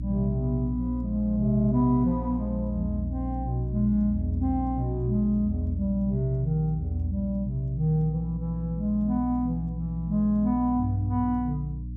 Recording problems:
mains hum; 60 Hz, harmonics up to 300 Hz, SNR 7 dB

